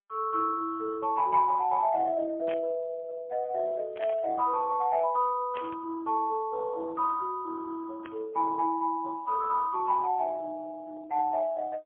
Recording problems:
phone line; 220 Hz to 2.7 kHz, AMR-NB, then MP3
burst of static; 4 times, first at 2.5 s; peak -8 dB vs average level

